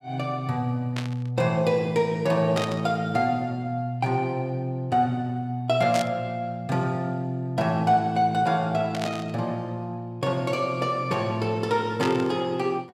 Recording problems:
static burst; 5 times, first at 1 s; peak -2 dB vs average level

